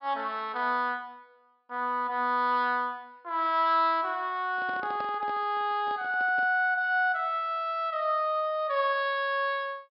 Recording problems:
low-pass filter; nothing above 5.3 kHz
microphone handling noise; from 4.5 to 6.5 s; peak -10 dB vs average level

